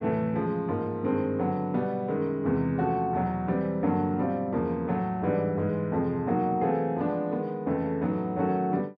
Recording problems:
none

